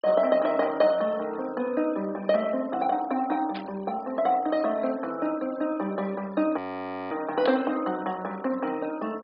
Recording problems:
treble missing; nothing above 5.2 kHz
noise reduction artefacts; signal-to-artefact ratio 22 dB
static burst; at 3.5 s; peak -9 dB vs average level
audio freezing; at 6.5 s for 0.5 s

